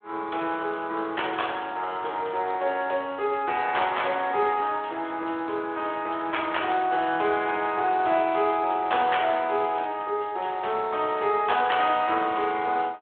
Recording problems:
telephone audio; 340 Hz to 3.5 kHz, Speex

